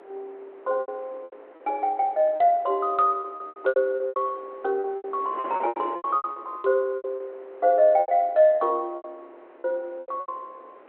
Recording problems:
telephone audio; 320 Hz to 3.6 kHz, G.726
wind noise; below 980 Hz, SNR 21 dB
lost packets; 16% of the sound replaced, filled with repeated pitch periods

